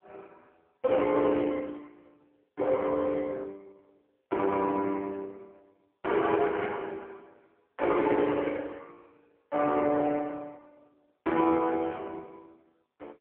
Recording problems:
phone line; 300 Hz to 3.2 kHz, AMR-NB

